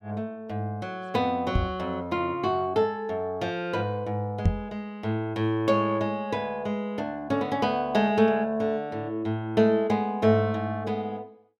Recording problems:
microphone thump; at 1.5 s and at 4.5 s; peak +7 dB vs average level

